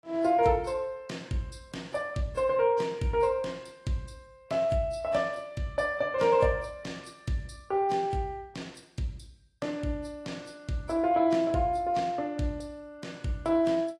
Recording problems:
lossy codec; AAC, log-spectral distance 2 dB

